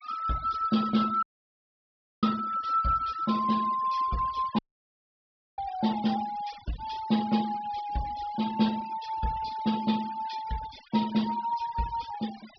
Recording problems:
low-pass filter; nothing above 5.5 kHz
denoising artefacts; signal-to-artefact ratio 17 dB
audio cutting out; at 1 s for 1 s and at 4.5 s for 1 s

